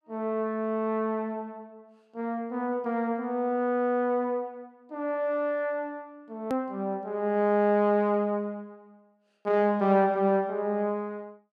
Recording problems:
hard cut with a click; at 6.5 s

